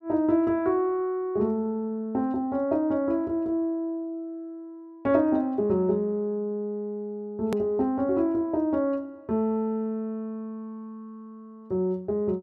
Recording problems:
click at an edit; at 7.5 s

